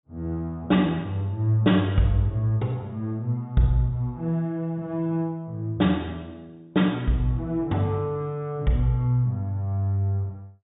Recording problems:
treble missing; nothing above 4 kHz

